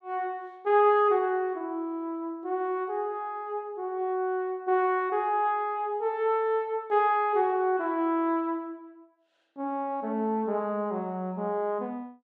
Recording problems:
none

